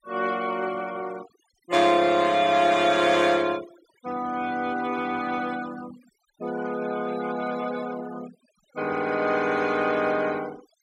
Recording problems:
denoising artefacts; signal-to-artefact ratio 19 dB

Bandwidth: 16 kHz